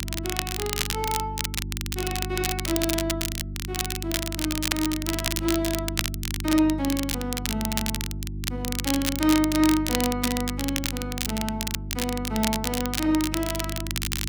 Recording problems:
electrical hum; 50 Hz, harmonics up to 350 Hz, SNR 6 dB
crackling; vinyl, SNR 2 dB

